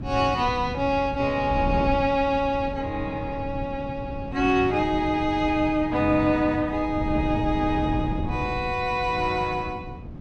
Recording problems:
wind on the microphone; below 210 Hz, SNR 9 dB

